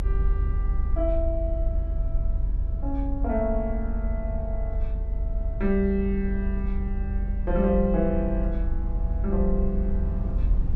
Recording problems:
low-frequency rumble; below 70 Hz, strongest tone 44 Hz, SNR 0 dB

